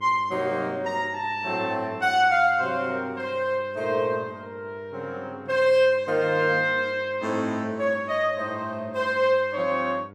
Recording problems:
hum; 50 Hz, harmonics up to 1.5 kHz, SNR 22 dB

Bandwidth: 15 kHz